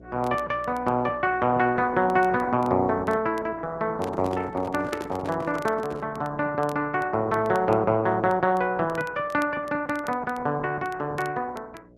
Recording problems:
lossy codec; Opus, log-spectral distance 3 dB
hum; 60 Hz, harmonics up to 660 Hz, SNR 22 dB
crackling; vinyl, SNR 25 dB
microphone handling noise; from 4 to 6 s; peak -4 dB vs average level

